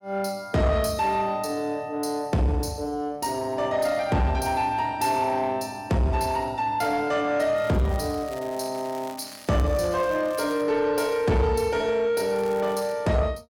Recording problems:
distorted audio; soft clipping, signal-to-distortion ratio 11 dB
crackle; from 7.5 to 11 s and at 12 s; loose cable, SNR 21 dB

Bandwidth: 17.5 kHz